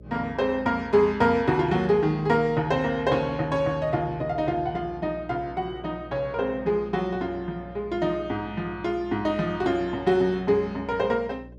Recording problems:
electrical hum; 60 Hz, harmonics up to 600 Hz, SNR 20 dB

